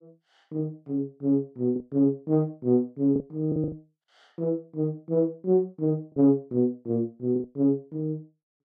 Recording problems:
lost packets; 5% of the sound replaced, filled with the last packet

